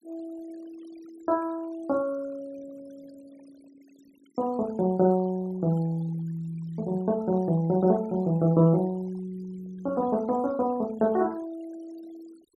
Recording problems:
denoising artefacts; signal-to-artefact ratio 26 dB

